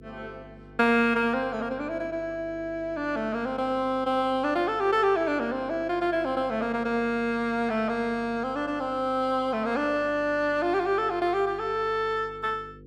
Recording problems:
mains hum; 50 Hz, harmonics up to 500 Hz, SNR 22 dB

